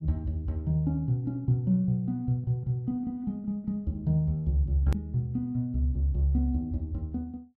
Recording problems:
hard cut with a click; at 5 s

